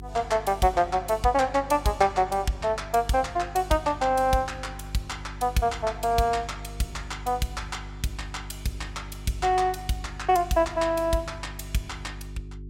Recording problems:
hum; 50 Hz, harmonics up to 400 Hz, SNR 15 dB

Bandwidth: 16 kHz